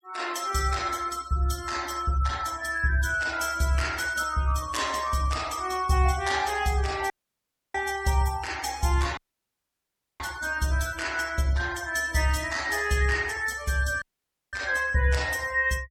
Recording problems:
denoising artefacts; signal-to-artefact ratio 16 dB
dropout; at 7 s for 0.5 s, at 9 s for 1 s and at 14 s for 0.5 s

